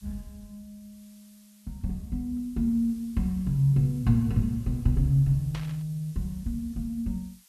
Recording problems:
background hiss; SNR 28 dB
burst of static; at 5.5 s; peak -9 dB vs average level

